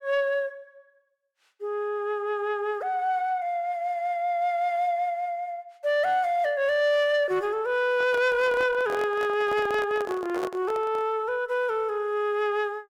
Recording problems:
distorted audio; soft clipping, signal-to-distortion ratio 11 dB
handling noise; from 8 to 11 s; peak -3 dB vs average level

